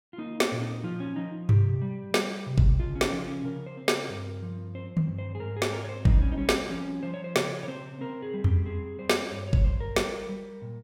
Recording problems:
none

